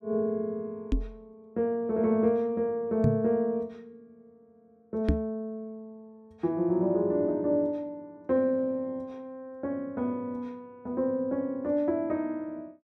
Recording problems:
knock on the microphone; at 1 s, at 3 s and at 5 s; peak +7 dB vs average level

